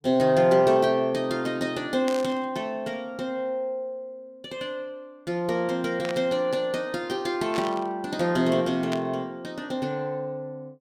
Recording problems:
burst of static; 4 times, first at 2 s; peak -4 dB vs average level

